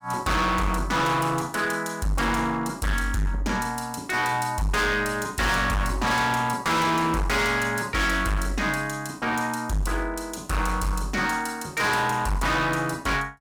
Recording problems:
distortion; hard clipping, uneven, signal-to-distortion ratio 5 dB

